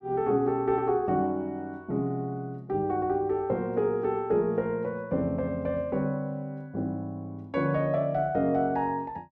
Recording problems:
none

